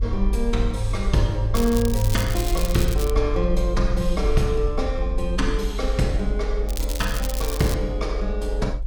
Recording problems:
rumble; below 48 Hz, strongest tone 46 Hz, SNR 2 dB
crackling; from 1.5 to 3 s and from 6.5 to 7.5 s; loose cable, SNR 8 dB

